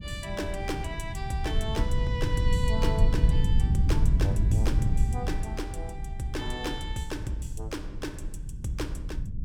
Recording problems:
rumble; below 100 Hz, SNR -5 dB

